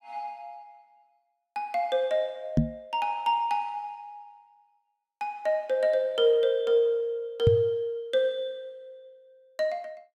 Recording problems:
microphone bump; at 2.5 s and at 7.5 s; peak +8 dB vs average level

